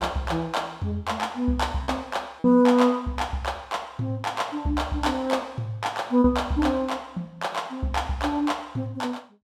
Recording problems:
packet loss; 1.3% of the sound replaced, filled with repeated pitch periods

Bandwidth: 15.5 kHz